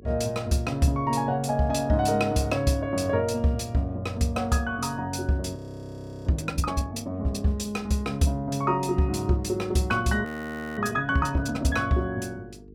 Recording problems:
hum; 50 Hz, harmonics up to 450 Hz, SNR 22 dB
frozen audio; at 5.5 s for 0.5 s and at 10 s for 0.5 s

